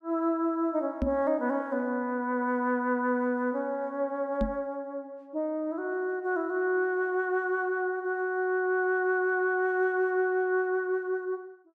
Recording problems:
microphone bump; at 1 s and at 4.5 s; peak +2 dB vs average level

